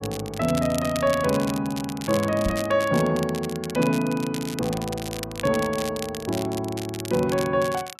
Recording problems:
crackle; vinyl, SNR 12 dB
microphone thump; at 2.5 s; peak 0 dB vs average level

